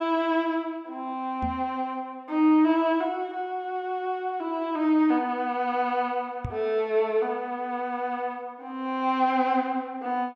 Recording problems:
microphone bump; at 1.5 s and at 6.5 s; peak -2 dB vs average level

